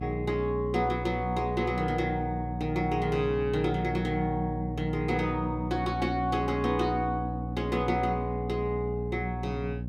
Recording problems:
hum; 60 Hz, harmonics up to 540 Hz, SNR 5 dB

